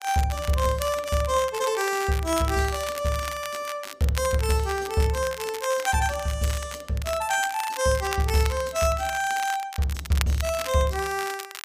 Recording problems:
crackling; vinyl, SNR 11 dB

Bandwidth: 15 kHz